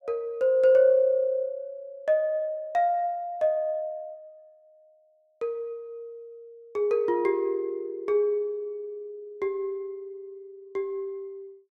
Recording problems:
none

